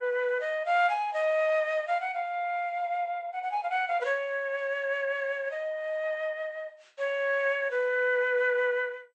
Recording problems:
lossy codec; MP2, log-spectral distance 2 dB, nothing above 6.9 kHz

